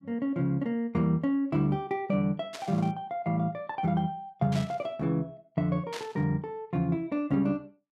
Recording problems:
static burst; at 2.5 s, at 4.5 s and at 6 s; peak -6 dB vs average level

